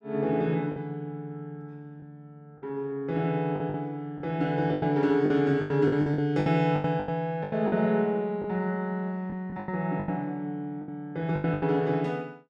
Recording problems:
lost packets; 11% of the sound replaced, filled with the last packet

